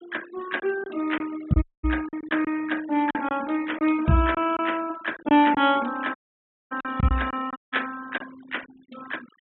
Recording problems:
treble cut off; nothing above 3.8 kHz
noise reduction artefacts; signal-to-artefact ratio 19 dB
lost packets; 7% of the sound replaced, filled with silence
dropout; at 1.5 s, at 6 s for 0.5 s and at 7.5 s

